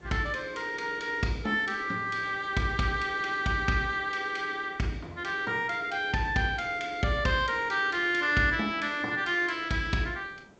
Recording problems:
treble cut off; nothing above 8 kHz
background hiss; slope -7 dB per octave, SNR 25 dB

